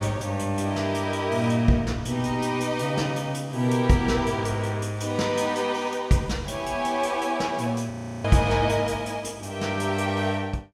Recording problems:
frozen audio; at 8 s

